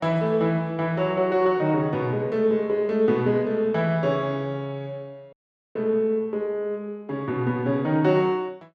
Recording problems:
audio cutting out; at 5.5 s

